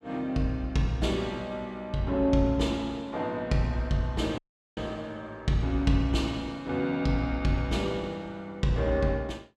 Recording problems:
audio cutting out; at 4.5 s

